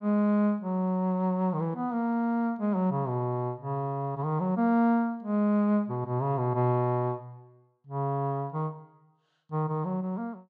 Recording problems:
none

